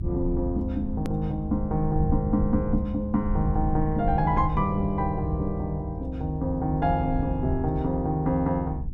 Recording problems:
low-frequency rumble; below 94 Hz, SNR 5 dB
click at an edit; at 1 s

